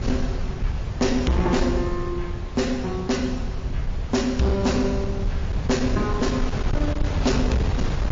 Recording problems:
lossy compression; MP3, log-spectral distance 2 dB, nothing above 6 kHz
distorted audio; hard clipping, signal-to-distortion ratio 11 dB
rumble; below 94 Hz, SNR 8 dB
wind noise; below 160 Hz, SNR 5 dB

